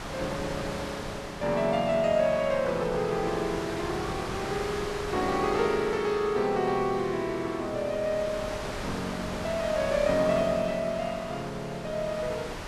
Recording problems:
wind noise; below 2.2 kHz, SNR 8 dB

